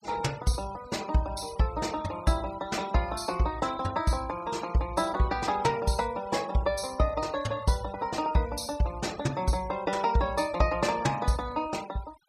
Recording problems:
noise reduction artefacts; signal-to-artefact ratio 18 dB

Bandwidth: 14.5 kHz